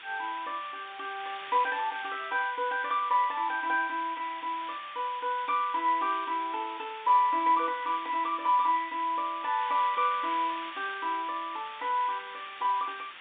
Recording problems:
telephone audio; 240 Hz to 3.9 kHz, G.711
hiss; SNR 14 dB

